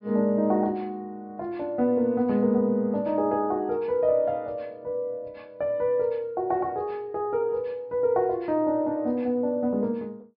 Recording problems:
treble cut off; nothing above 5.5 kHz

